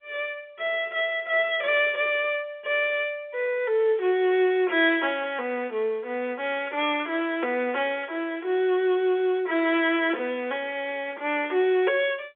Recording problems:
telephone audio; 260 Hz to 3.6 kHz, G.711

